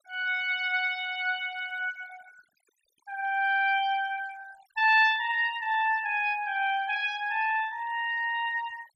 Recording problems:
denoising artefacts; signal-to-artefact ratio 23 dB

